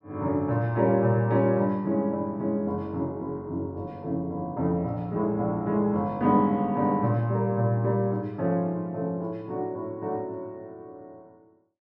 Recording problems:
none

